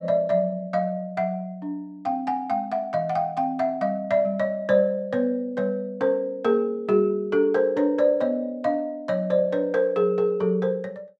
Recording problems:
none

